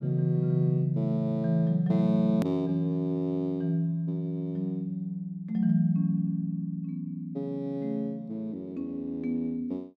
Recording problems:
edit click; at 2.5 s

